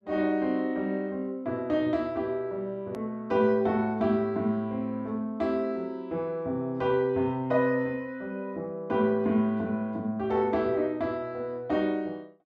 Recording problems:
hard cut with a click; at 3 s

